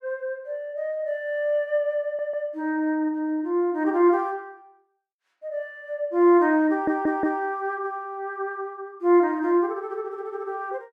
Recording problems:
audio stuttering; at 2 s and at 6.5 s

